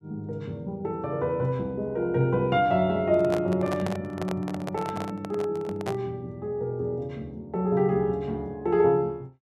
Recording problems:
microphone handling noise; from 3 to 6 s; peak -2 dB vs average level

